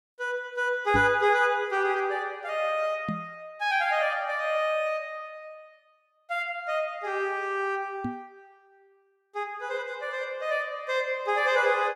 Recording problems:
microphone thump; at 1 s, at 3 s and at 8 s; peak +1 dB vs average level

